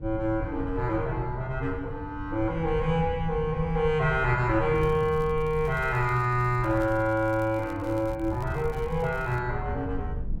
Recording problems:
wind noise; below 110 Hz, SNR 10 dB
crackle; from 4.5 to 9.5 s; loose cable, SNR 27 dB

